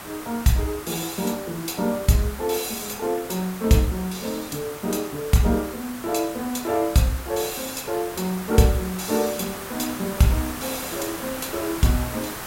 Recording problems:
background hiss; SNR 10 dB

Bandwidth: 16 kHz